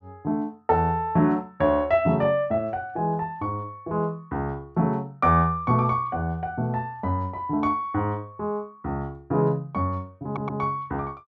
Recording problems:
stutter; at 10 s

